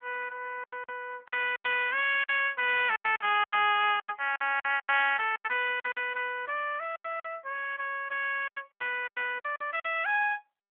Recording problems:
telephone audio; 300 Hz to 3.3 kHz, AMR-NB
packet loss; 13% of the sound replaced, filled with silence

